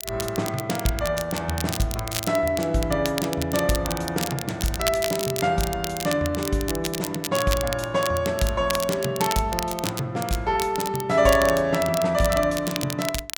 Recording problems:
crackling; vinyl, SNR 8 dB

